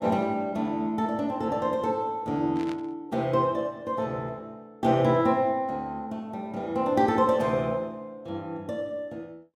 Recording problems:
burst of static; at 2.5 s; peak -13 dB vs average level

